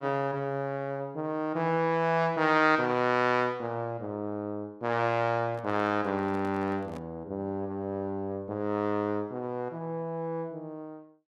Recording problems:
microphone handling noise; from 5.5 to 7 s; peak -11 dB vs average level

